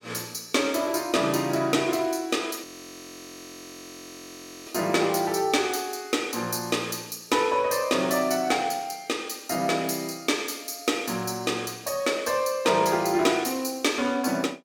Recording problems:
frozen audio; at 2.5 s for 2 s

